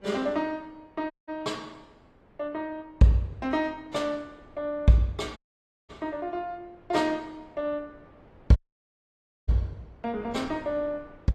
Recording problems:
codec artefacts; AAC, log-spectral distance 2 dB, nothing above 13.1 kHz
wind on the microphone; below 680 Hz, SNR 24 dB
dropout; at 1 s, at 5.5 s for 0.5 s and at 8.5 s for 1 s

